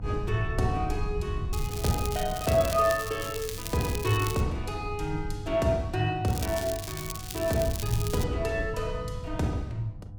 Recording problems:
electrical hum; 50 Hz, harmonics up to 700 Hz, SNR 15 dB
low-frequency rumble; below 110 Hz, SNR 9 dB
crackle; from 1.5 to 4.5 s and from 6.5 to 8 s; loose cable, SNR 9 dB

